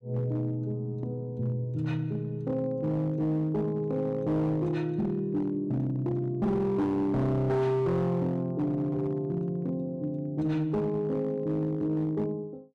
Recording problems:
distortion; hard clipping, signal-to-distortion ratio 12 dB

